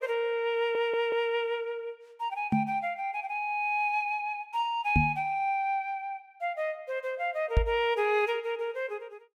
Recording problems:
audio stuttering; at 0.5 s
knock on the microphone; at 2.5 s, at 5 s and at 7.5 s; peak +8 dB vs average level

